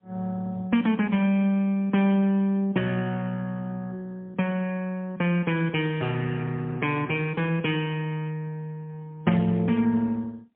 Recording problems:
telephone audio; 130 Hz to 3.6 kHz, AMR-NB, then MP3

